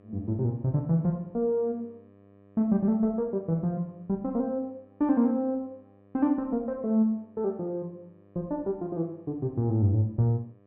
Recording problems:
hum; 50 Hz, harmonics up to 1.9 kHz, SNR 29 dB

